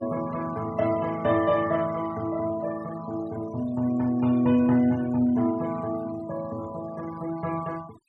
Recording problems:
noise reduction artefacts; signal-to-artefact ratio 19 dB

